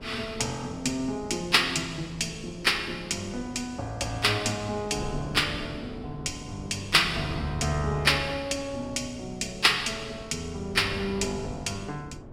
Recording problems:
wind noise; below 360 Hz, SNR 14 dB

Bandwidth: 16.5 kHz